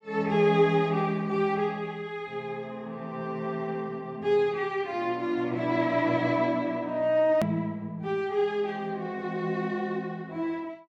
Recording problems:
click at an edit; at 7.5 s

